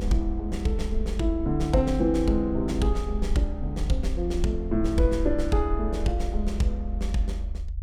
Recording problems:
low-frequency rumble; below 70 Hz, strongest tone 46 Hz, SNR 4 dB

